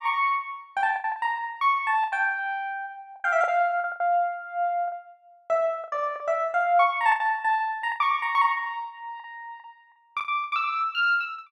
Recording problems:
lost packets; 9% of the sound replaced, filled with the last packet

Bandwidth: 12.5 kHz